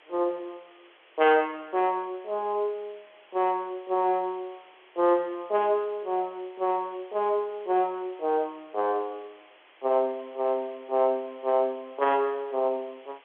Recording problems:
telephone audio; 320 Hz to 3.4 kHz, G.711
hiss; SNR 27 dB

